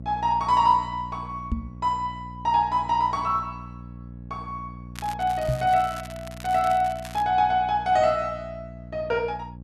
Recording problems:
hum; 60 Hz, harmonics up to 600 Hz, SNR 16 dB
microphone bump; at 1.5 s and at 5.5 s; peak +1 dB vs average level
crackle; from 5 to 7 s; loose cable, SNR 19 dB

